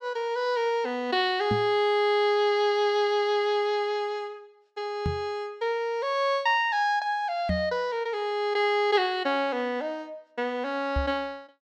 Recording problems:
microphone thump; 4 times, first at 1.5 s; peak +1 dB vs average level

